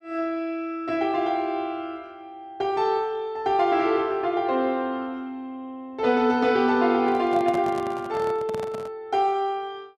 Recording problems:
handling noise; from 7 to 9 s; peak -6 dB vs average level

